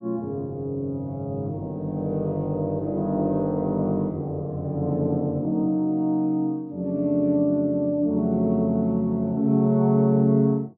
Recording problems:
treble missing; nothing above 7 kHz

